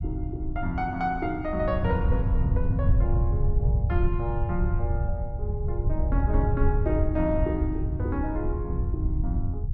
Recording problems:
rumble; below 100 Hz, SNR -3 dB

